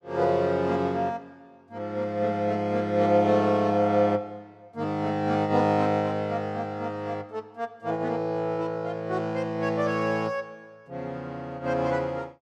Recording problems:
none

